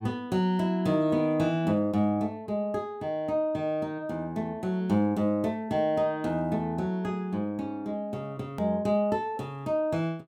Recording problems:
click at an edit; at 8.5 s

